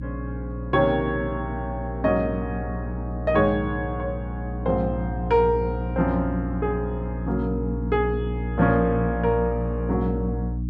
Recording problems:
hum; 60 Hz, harmonics up to 300 Hz, SNR 5 dB

